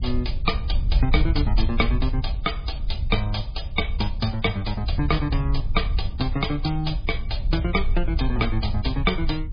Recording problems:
codec artefacts; MP3, log-spectral distance 5 dB, nothing above 5 kHz
wind on the microphone; below 64 Hz, SNR 1 dB

